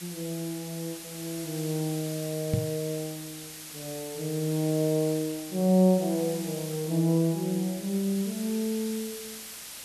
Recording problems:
background hiss; slope +1 dB per octave, SNR 11 dB
microphone thump; at 2.5 s; peak +5 dB vs average level

